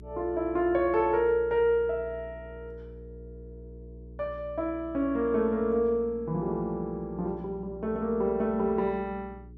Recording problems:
hum; 60 Hz, harmonics up to 420 Hz, SNR 18 dB

